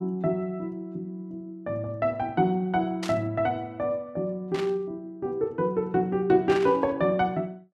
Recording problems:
static burst; at 3 s, at 4.5 s and at 6.5 s; peak -4 dB vs average level

